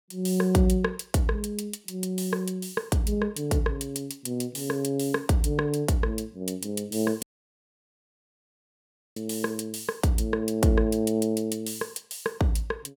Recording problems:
dropout; at 7 s for 2 s

